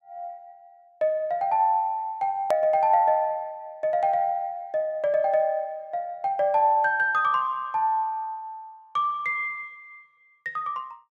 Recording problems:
click at an edit; at 2.5 s

